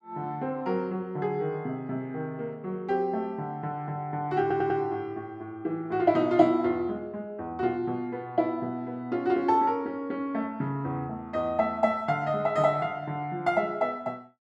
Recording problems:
stutter; at 4.5 s

